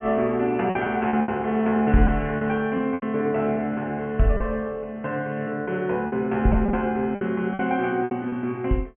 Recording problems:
treble cut off; nothing above 3.1 kHz
packet loss; 8% of the sound replaced, filled with repeated pitch periods

